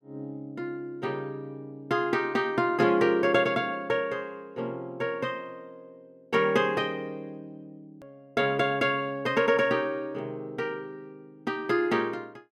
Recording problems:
hard cut with a click; at 8 s

